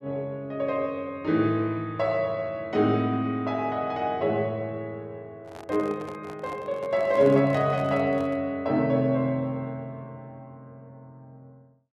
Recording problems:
handling noise; from 5.5 to 8.5 s; peak -10 dB vs average level

